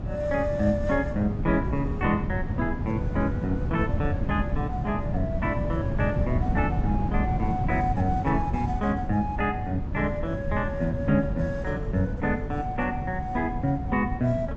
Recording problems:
low-pass filter; nothing above 8 kHz
wind on the microphone; below 180 Hz, SNR 2 dB

